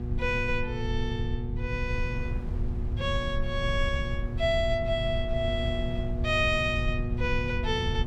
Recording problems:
electrical hum; 60 Hz, harmonics up to 840 Hz, SNR 7 dB
low-frequency rumble; below 94 Hz, SNR 4 dB
wind noise; below 160 Hz, SNR 13 dB

